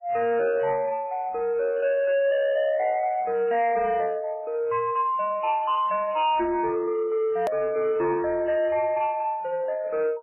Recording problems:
lossy compression; MP3, log-spectral distance 2 dB, nothing above 2.6 kHz
distortion; soft clipping, signal-to-distortion ratio 11 dB
hard cut with a click; at 7.5 s

